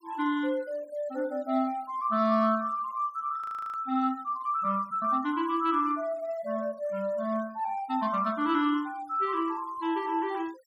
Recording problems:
denoising artefacts; signal-to-artefact ratio 27 dB
frozen audio; at 3.5 s

